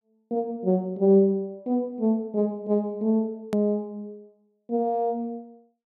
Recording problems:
click at an edit; at 3.5 s

